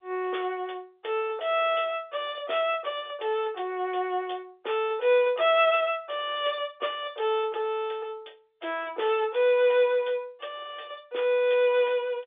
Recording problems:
telephone audio; 300 Hz to 3.6 kHz, G.711

